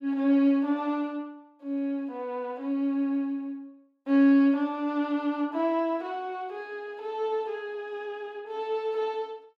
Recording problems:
none

